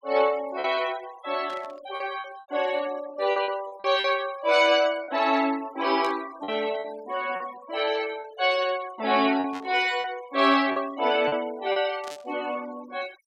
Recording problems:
denoising artefacts; signal-to-artefact ratio 19 dB
lost packets; 6% of the sound replaced, filled with repeated pitch periods
static burst; 5 times, first at 1.5 s; peak -10 dB vs average level

